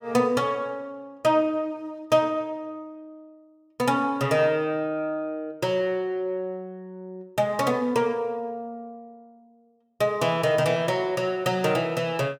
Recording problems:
none

